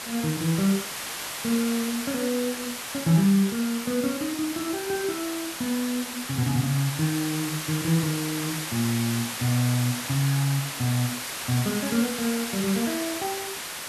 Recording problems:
hiss; slope 0 dB per octave, SNR 5 dB

